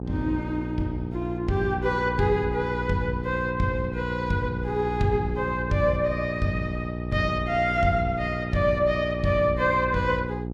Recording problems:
electrical hum; 60 Hz, harmonics up to 900 Hz, SNR 6 dB

